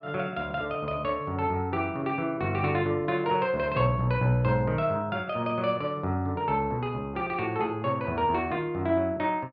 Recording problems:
none

